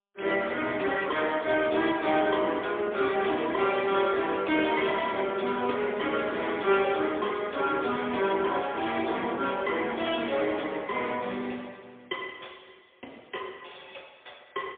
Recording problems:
phone line; 280 Hz to 3.5 kHz, AMR-NB, then MP3

